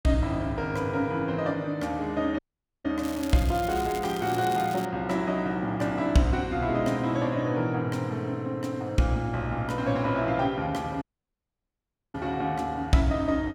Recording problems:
dropout; at 2.5 s and at 11 s for 1 s
crackling; from 3 to 5 s; loose cable, SNR 15 dB

